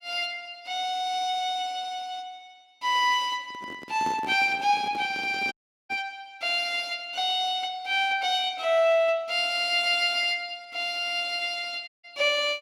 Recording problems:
microphone handling noise; from 3.5 to 6 s; peak -7 dB vs average level
audio cutting out; at 5.5 s and at 12 s

